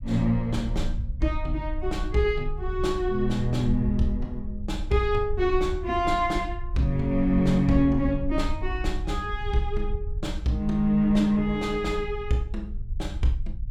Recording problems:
rumble; below 60 Hz, SNR 8 dB

